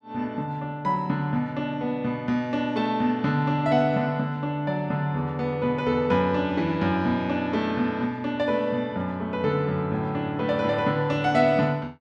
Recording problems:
none

